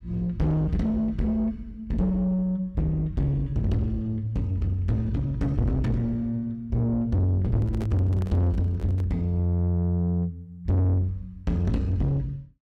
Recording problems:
distorted audio; soft clipping, signal-to-distortion ratio 6 dB
handling noise; from 7.5 to 9 s; peak -5 dB vs average level

